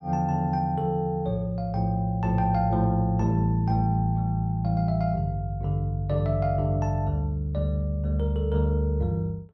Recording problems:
none

